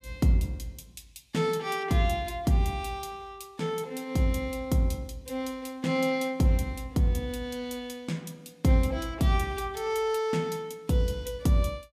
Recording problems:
none

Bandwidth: 15 kHz